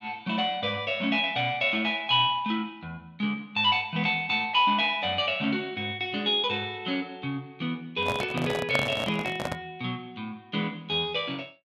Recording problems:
handling noise; from 8 to 9.5 s; peak +2 dB vs average level

